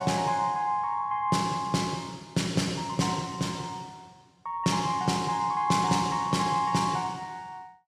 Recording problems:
none

